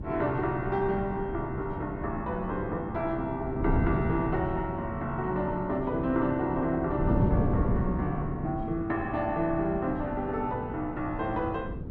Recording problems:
wind noise; below 260 Hz, SNR 4 dB

